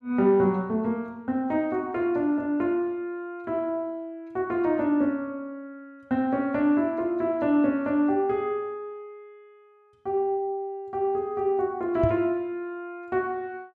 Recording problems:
microphone thump; at 12 s; peak +3 dB vs average level

